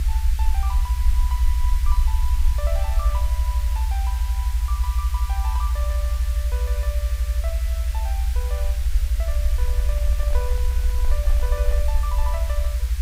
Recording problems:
hiss; SNR 3 dB
rumble; below 66 Hz, SNR -13 dB
handling noise; from 9.5 to 12 s; peak -4 dB vs average level

